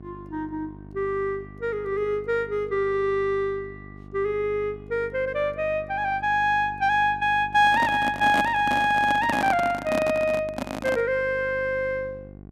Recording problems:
hum; 50 Hz, harmonics up to 800 Hz, SNR 19 dB
handling noise; from 7.5 to 11 s; peak +1 dB vs average level

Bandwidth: 14 kHz